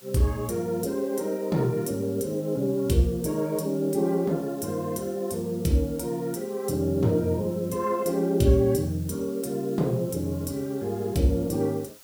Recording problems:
background hiss; slope 0 dB per octave, SNR 22 dB

